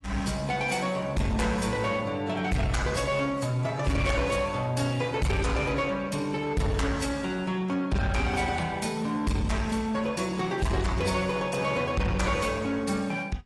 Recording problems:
codec artefacts; AAC, log-spectral distance 3 dB, nothing above 11.6 kHz
distorted audio; soft clipping, signal-to-distortion ratio 7 dB

